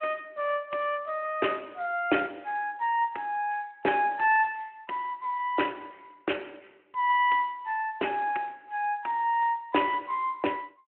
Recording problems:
phone line; 260 Hz to 3.2 kHz, Speex

